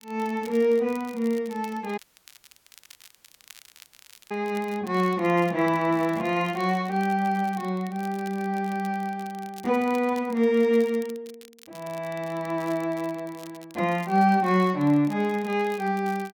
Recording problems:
crackling; vinyl, SNR 24 dB
audio cutting out; at 2 s for 2.5 s

